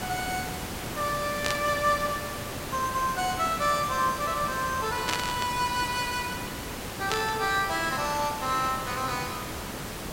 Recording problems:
background hiss; slope -4 dB per octave, SNR 6 dB
burst of static; at 1.5 s, at 5 s and at 7 s; peak +3 dB vs average level

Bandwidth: 16 kHz